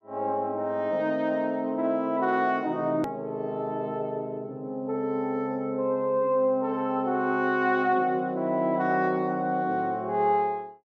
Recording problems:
edit click; at 3 s

